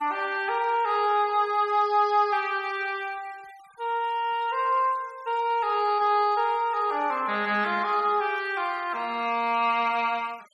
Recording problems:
noise reduction artefacts; signal-to-artefact ratio 25 dB

